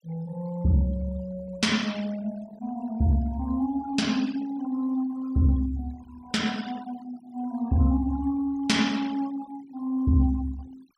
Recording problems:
denoising artefacts; signal-to-artefact ratio 21 dB

